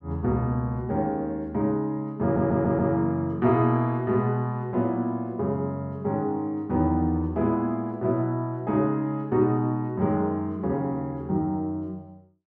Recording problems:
audio stuttering; at 2 s

